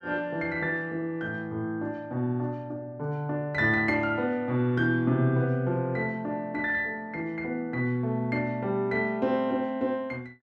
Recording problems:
none

